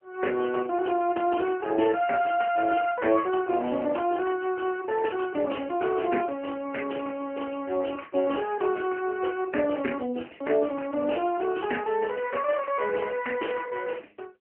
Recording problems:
telephone audio; 240 Hz to 3.1 kHz, AMR-NB

